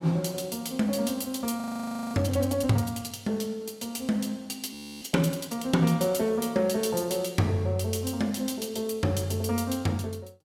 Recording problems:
frozen audio; at 1.5 s for 0.5 s and at 4.5 s

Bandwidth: 16 kHz